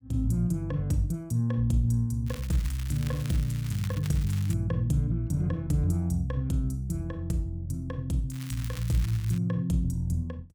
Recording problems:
crackling; from 2.5 to 4.5 s and from 8.5 to 9.5 s; loose cable, SNR 16 dB

